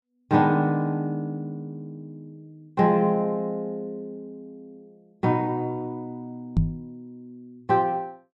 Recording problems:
microphone thump; at 6.5 s; peak +7 dB vs average level

